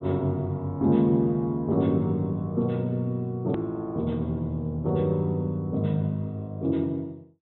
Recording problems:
treble cut off; nothing above 4 kHz
hard cut with a click; at 3.5 s

